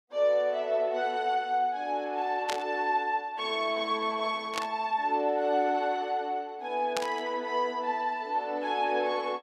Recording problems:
static burst; at 2.5 s, at 4.5 s and at 7 s; peak +1 dB vs average level

